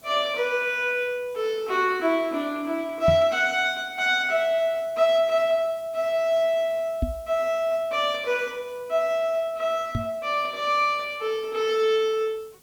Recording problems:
background hiss; SNR 28 dB
microphone bump; at 3 s, at 7 s and at 10 s; peak +2 dB vs average level

